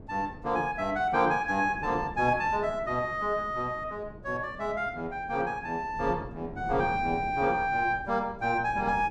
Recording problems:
wind noise; below 320 Hz, SNR 16 dB

